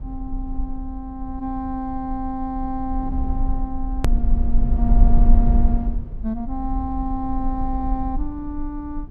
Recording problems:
low-frequency rumble; below 50 Hz, SNR -3 dB
edit click; at 4 s

